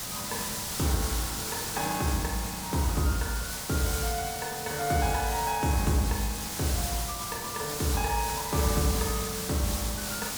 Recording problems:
hiss; slope 0 dB per octave, SNR 2 dB

